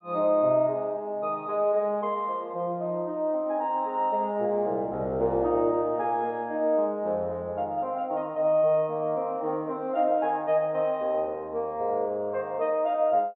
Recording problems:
treble missing; nothing above 4 kHz

